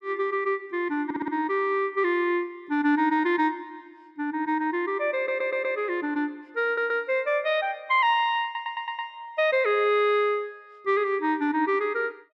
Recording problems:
stutter; 4 times, first at 1 s

